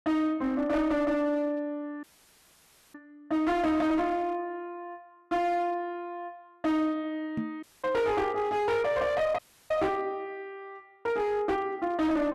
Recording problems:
distorted audio; hard clipping, uneven, signal-to-distortion ratio 10 dB
dropout; at 2 s for 1 s, at 7.5 s and at 9.5 s
knock on the microphone; at 7.5 s; peak 0 dB vs average level

